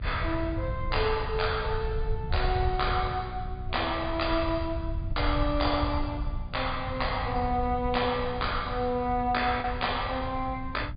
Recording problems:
treble cut off; nothing above 4.9 kHz
electrical hum; 60 Hz, harmonics up to 660 Hz, SNR 15 dB
low-frequency rumble; below 92 Hz, SNR 6 dB
packet loss; 0.7% of the sound replaced, filled with the last packet

